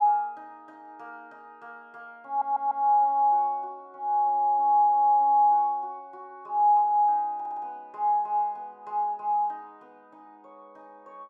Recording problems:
stutter; at 2.5 s and at 7.5 s

